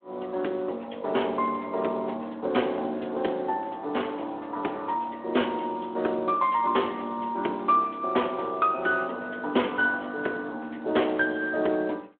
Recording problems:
phone line; 260 Hz to 3.5 kHz, Speex

